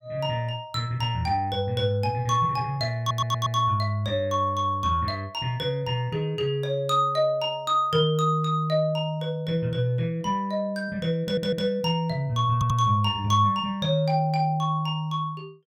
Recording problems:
stutter; at 3 s, at 11 s and at 13 s

